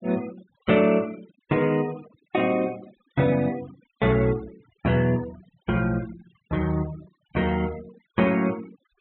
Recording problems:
treble cut off; nothing above 3.9 kHz
denoising artefacts; signal-to-artefact ratio 21 dB

